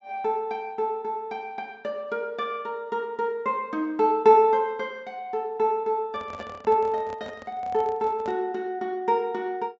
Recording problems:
treble cut off; nothing above 8 kHz
microphone handling noise; from 6 to 8.5 s; peak -11 dB vs average level

